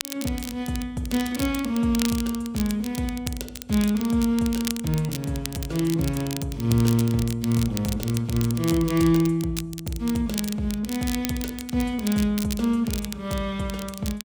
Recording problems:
crackle; vinyl, SNR 11 dB

